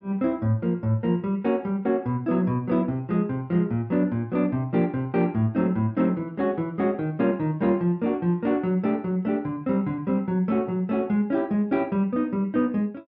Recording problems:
treble missing; nothing above 5.5 kHz

